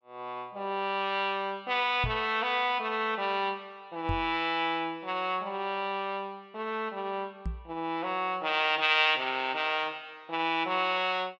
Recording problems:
microphone bump; at 2 s, at 4 s and at 7.5 s; peak -1 dB vs average level

